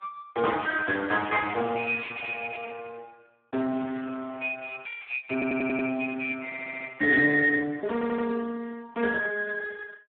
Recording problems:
telephone audio; 150 Hz to 2 kHz, Speex
stutter; at 5.5 s, at 6.5 s and at 8 s

